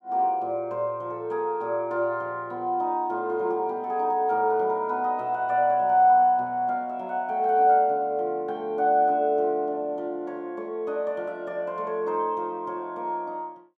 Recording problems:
none

